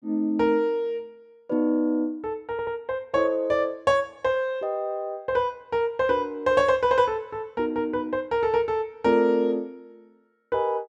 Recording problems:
stutter; at 2.5 s

